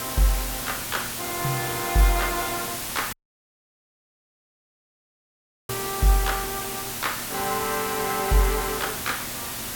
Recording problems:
electrical hum; 60 Hz, harmonics up to 720 Hz, SNR 19 dB
hiss; slope -1 dB per octave, SNR 2 dB
audio cutting out; at 3 s for 2.5 s

